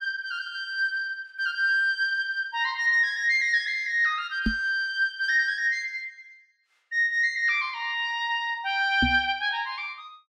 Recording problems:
knock on the microphone; at 4.5 s and at 9 s; peak +3 dB vs average level

